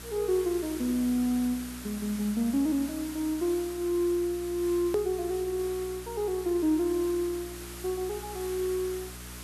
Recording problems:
electrical hum; 60 Hz, harmonics up to 420 Hz, SNR 17 dB
background hiss; SNR 13 dB
click at an edit; at 5 s

